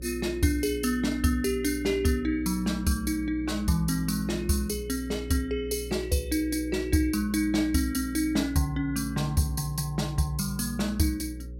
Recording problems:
mains hum; 60 Hz, harmonics up to 540 Hz, SNR 12 dB

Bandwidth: 16 kHz